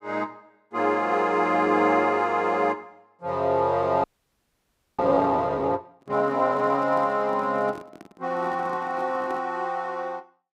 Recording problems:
audio freezing; at 4 s for 1 s
microphone handling noise; from 6 to 9.5 s; peak -11 dB vs average level

